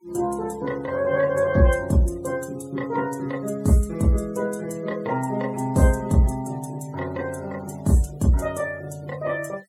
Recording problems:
denoising artefacts; signal-to-artefact ratio 24 dB

